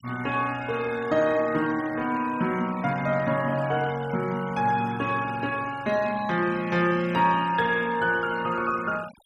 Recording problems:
denoising artefacts; signal-to-artefact ratio 18 dB

